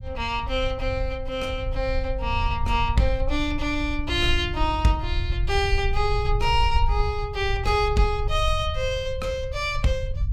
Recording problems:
low-frequency rumble; below 72 Hz, SNR 4 dB

